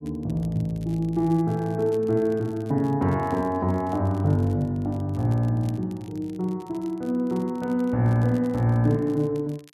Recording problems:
crackling; vinyl, SNR 29 dB

